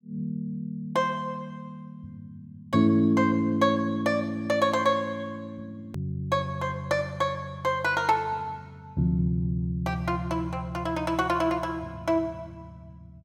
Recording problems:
edit click; at 6 s

